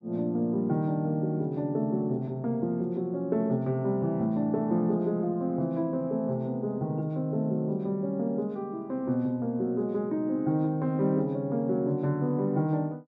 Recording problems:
none

